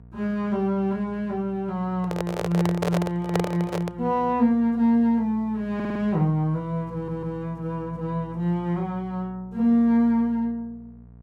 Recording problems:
electrical hum; 60 Hz, harmonics up to 720 Hz, SNR 22 dB
handling noise; from 2 to 4 s; peak +3 dB vs average level
stutter; at 6 s and at 7 s

